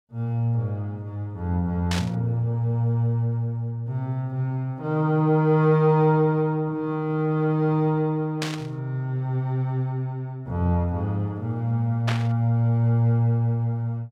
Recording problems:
burst of static; at 2 s, at 8.5 s and at 12 s; peak -1 dB vs average level

